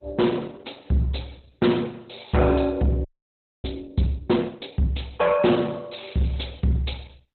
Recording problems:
codec artefacts; Opus, log-spectral distance 5 dB, nothing above 4.1 kHz
distorted audio; soft clipping, signal-to-distortion ratio 11 dB
frozen audio; at 3 s for 0.5 s

